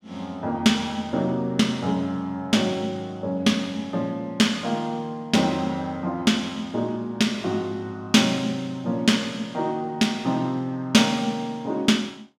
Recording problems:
none

